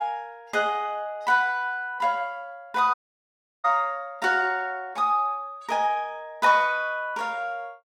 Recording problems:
audio cutting out; at 3 s for 0.5 s

